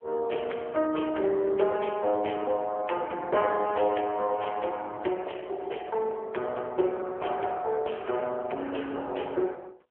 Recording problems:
telephone audio; 320 Hz to 3.2 kHz, AMR-NB

